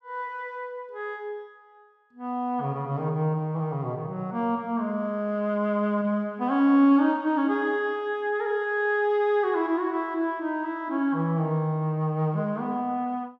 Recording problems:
none

